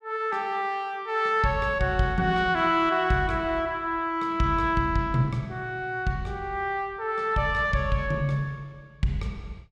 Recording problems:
none

